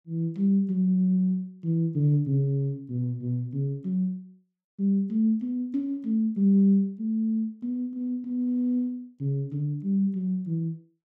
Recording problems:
none

